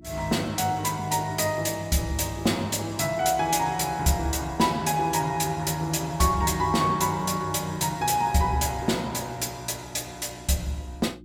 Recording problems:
hum; 60 Hz, harmonics up to 360 Hz, SNR 23 dB

